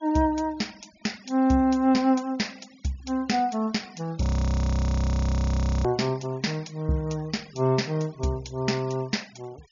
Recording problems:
treble missing; nothing above 7 kHz
denoising artefacts; signal-to-artefact ratio 25 dB
frozen audio; at 4 s for 1.5 s

